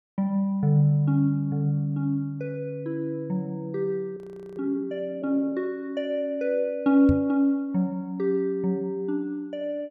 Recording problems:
audio freezing; at 4 s
microphone thump; at 7 s; peak +4 dB vs average level

